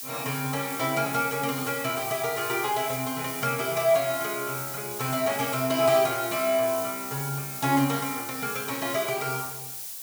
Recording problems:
background hiss; slope +2 dB per octave, SNR 6 dB

